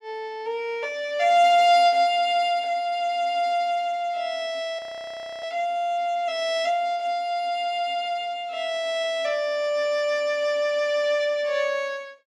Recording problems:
audio freezing; at 5 s for 0.5 s

